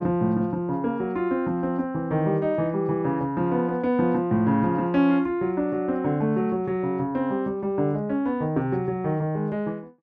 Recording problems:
none

